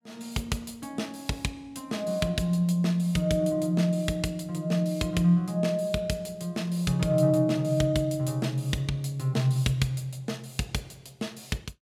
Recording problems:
none

